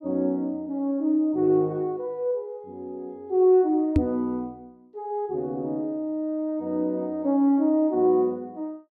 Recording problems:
microphone bump; at 4 s; peak +7 dB vs average level

